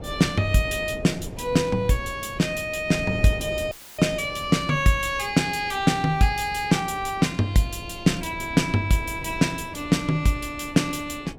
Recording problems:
wind noise; below 390 Hz, SNR 15 dB
dropout; at 3.5 s

